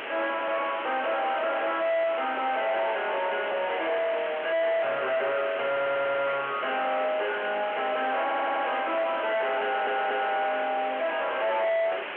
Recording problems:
telephone audio; 690 Hz to 3.4 kHz, G.711
distortion; soft clipping, signal-to-distortion ratio 4 dB
hiss; SNR 6 dB
stutter; at 5.5 s, at 8 s and at 9.5 s

